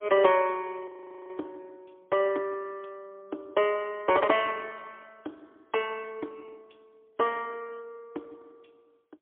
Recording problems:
telephone audio; 260 Hz to 3.3 kHz, AMR-NB, then MP3
audio freezing; at 1 s

